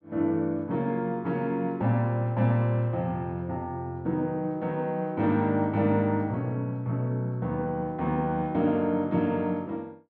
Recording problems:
none

